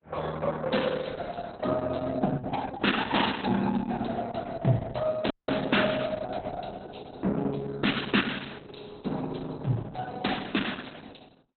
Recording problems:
lossy compression; Opus, log-spectral distance 8 dB, nothing above 4 kHz
dropout; at 5.5 s

